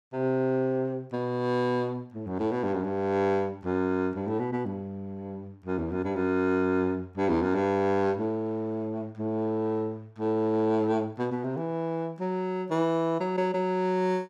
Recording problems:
none

